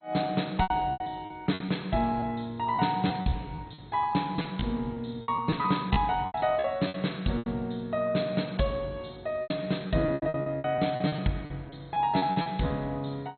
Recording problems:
codec artefacts; MP2, log-spectral distance 5 dB, nothing above 4.2 kHz
packet loss; 12% of the sound replaced, filled with repeated pitch periods

